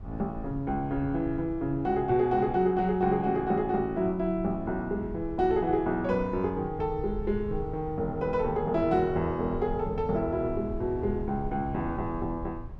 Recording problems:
rumble; below 110 Hz, SNR 13 dB

